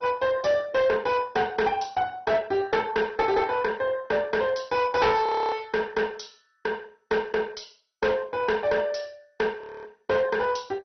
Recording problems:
lossy codec; MP2, log-spectral distance 4 dB, nothing above 6 kHz
distorted audio; hard clipping, uneven, signal-to-distortion ratio 11 dB
frozen audio; at 5.5 s and at 9.5 s

